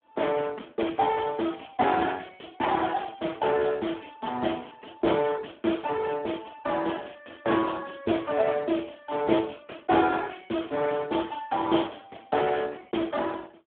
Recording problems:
telephone audio; 220 Hz to 3.4 kHz, Speex

